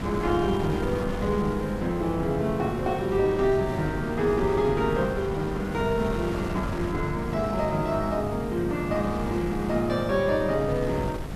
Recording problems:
electrical hum; 50 Hz, harmonics up to 800 Hz, SNR 13 dB
background hiss; SNR 28 dB
wind on the microphone; below 420 Hz, SNR 9 dB

